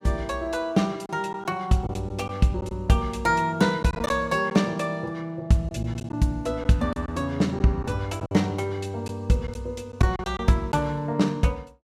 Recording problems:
packet loss; 5% of the sound replaced, filled with silence

